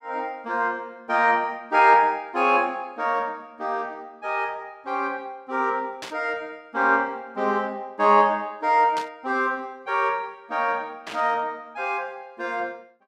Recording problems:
burst of static; at 6 s, at 9 s and at 11 s; peak -7 dB vs average level

